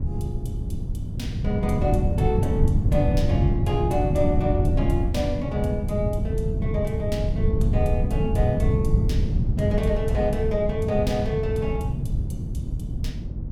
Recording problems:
wind noise; below 150 Hz, SNR -2 dB

